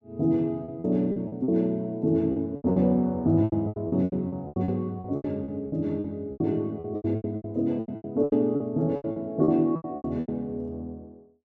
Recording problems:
packet loss; 19% of the sound replaced, filled with repeated pitch periods

